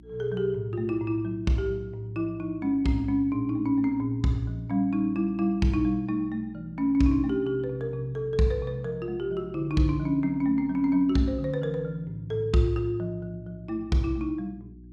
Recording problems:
hum; 60 Hz, harmonics up to 360 Hz, SNR 22 dB

